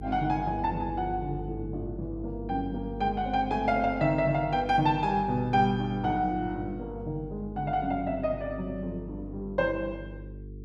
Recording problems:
electrical hum; 50 Hz, harmonics up to 450 Hz, SNR 12 dB

